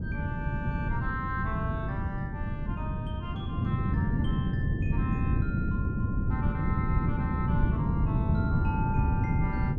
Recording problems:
wind on the microphone; below 190 Hz, SNR -9 dB

